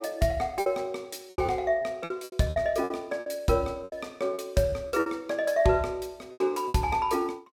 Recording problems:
packet loss; 12% of the sound replaced, filled with repeated pitch periods

